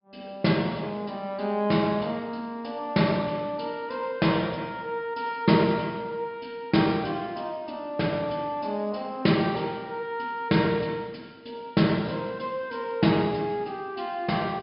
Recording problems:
treble missing; nothing above 5.5 kHz

